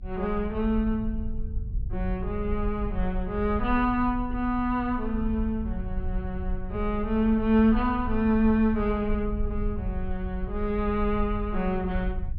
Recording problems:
treble missing; nothing above 5.5 kHz
rumble; below 64 Hz, SNR 8 dB

